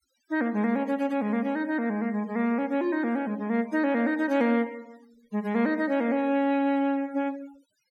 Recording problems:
denoising artefacts; signal-to-artefact ratio 26 dB

